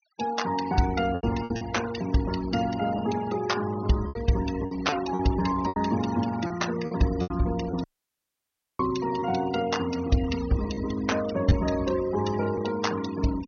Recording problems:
low-pass filter; nothing above 6.4 kHz
denoising artefacts; signal-to-artefact ratio 14 dB
packet loss; 5% of the sound replaced, filled with repeated pitch periods
audio cutting out; at 8 s for 1 s

